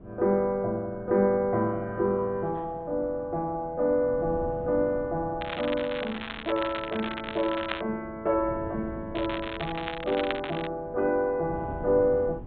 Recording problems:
treble missing; nothing above 4 kHz
wind on the microphone; below 280 Hz, SNR 16 dB
crackle; from 5.5 to 8 s and from 9 to 11 s; loose cable, SNR 9 dB

